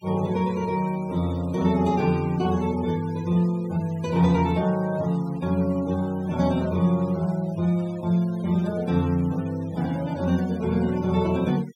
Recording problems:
noise reduction artefacts; signal-to-artefact ratio 22 dB

